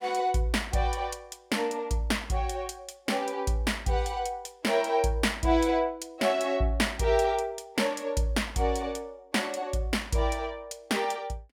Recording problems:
none

